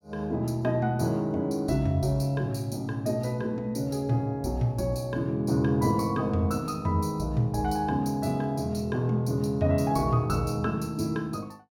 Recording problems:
none

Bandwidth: 18 kHz